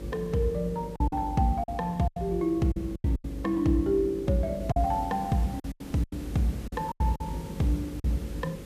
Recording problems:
hum; 50 Hz, harmonics up to 550 Hz, SNR 17 dB
background hiss; SNR 16 dB
packet loss; 10% of the sound replaced, filled with silence

